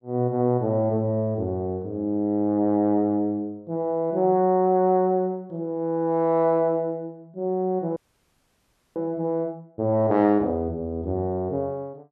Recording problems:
audio freezing; at 8 s for 1 s

